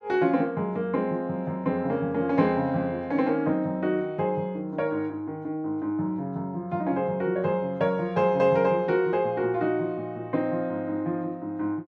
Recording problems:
none

